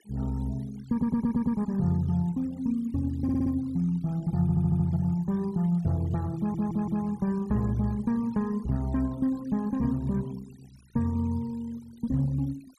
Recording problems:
denoising artefacts; signal-to-artefact ratio 26 dB
stutter; 4 times, first at 1 s

